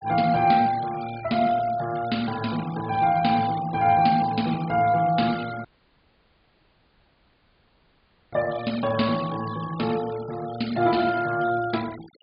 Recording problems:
treble cut off; nothing above 4.8 kHz
denoising artefacts; signal-to-artefact ratio 18 dB
audio cutting out; at 5.5 s for 2.5 s

